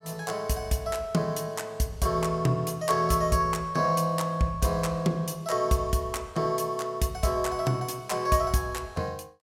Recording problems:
none

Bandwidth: 16.5 kHz